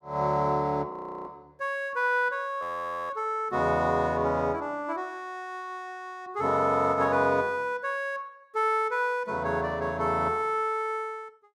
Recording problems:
audio freezing; at 1 s and at 2.5 s

